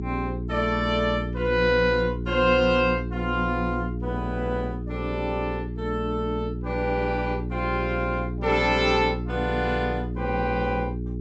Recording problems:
treble missing; nothing above 7.7 kHz
hum; 60 Hz, harmonics up to 420 Hz, SNR 5 dB

